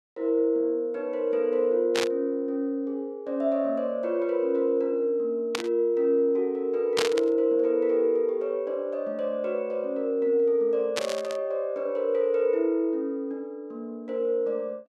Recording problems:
burst of static; 4 times, first at 2 s; peak +3 dB vs average level

